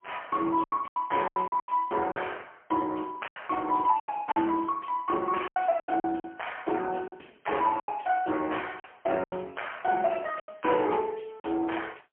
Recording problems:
phone line; 220 Hz to 3.2 kHz, AMR-NB, then MP3
packet loss; 10% of the sound replaced, filled with silence

